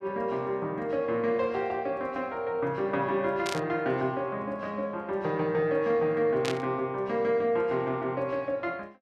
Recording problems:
static burst; at 3.5 s and at 6.5 s; peak 0 dB vs average level

